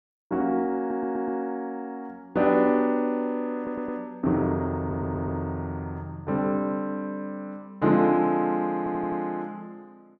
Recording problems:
stutter; 4 times, first at 1 s

